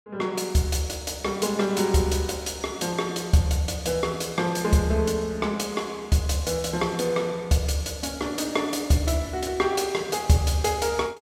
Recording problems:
none

